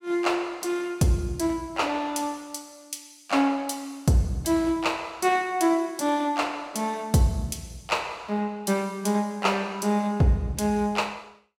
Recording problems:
none

